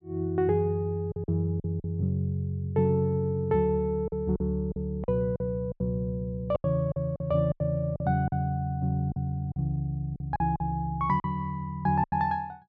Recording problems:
lost packets; 9% of the sound replaced, filled with silence

